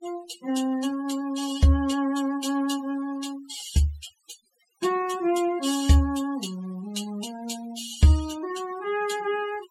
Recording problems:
denoising artefacts; signal-to-artefact ratio 16 dB

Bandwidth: 16 kHz